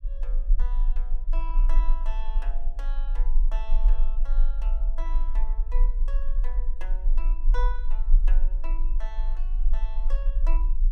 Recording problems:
rumble; below 34 Hz, strongest tone 18 Hz, SNR -16 dB

